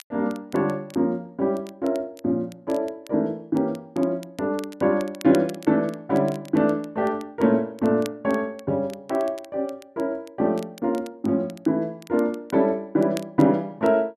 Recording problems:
crackle; vinyl, SNR 24 dB

